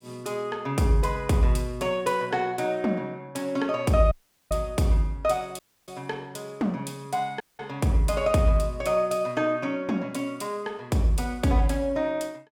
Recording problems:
audio cutting out; at 4 s, at 5.5 s and at 7.5 s

